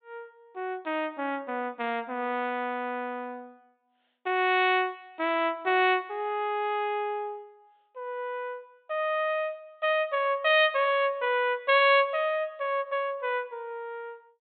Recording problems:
low-pass filter; nothing above 4 kHz

